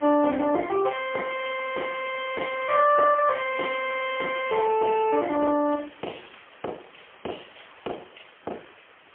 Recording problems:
telephone audio; 320 Hz to 3.1 kHz, AMR-NB, then MP3
hiss; SNR 25 dB

